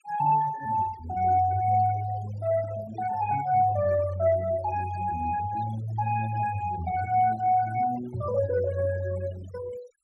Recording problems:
denoising artefacts; signal-to-artefact ratio 16 dB

